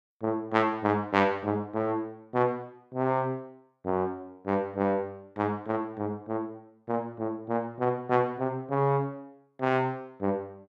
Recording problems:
none

